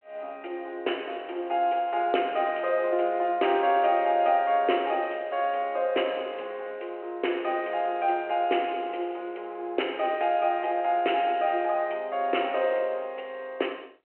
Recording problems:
telephone audio; 300 Hz to 3.1 kHz, G.726

